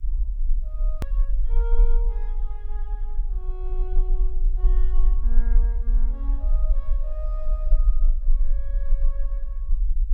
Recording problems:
background hiss; SNR 29 dB
low-frequency rumble; below 38 Hz, strongest tone 22 Hz, SNR -18 dB
click at an edit; at 1 s

